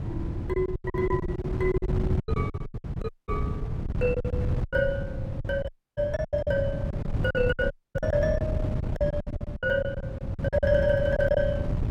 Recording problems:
wind noise; below 170 Hz, SNR 2 dB
packet loss; 16% of the sound replaced, filled with silence
audio cutting out; at 3 s, at 5.5 s and at 7.5 s

